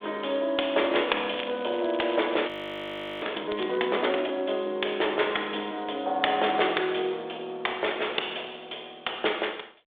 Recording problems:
telephone audio; 320 Hz to 3.6 kHz, G.726
crackle; from 0.5 to 4 s; loose cable, SNR 14 dB
audio freezing; at 2.5 s for 0.5 s

